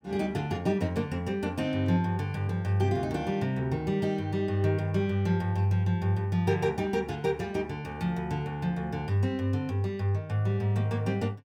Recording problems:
none

